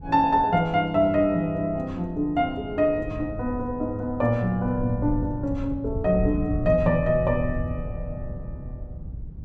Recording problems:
wind noise; below 120 Hz, SNR 11 dB

